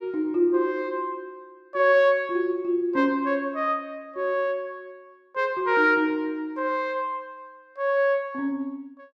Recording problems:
none

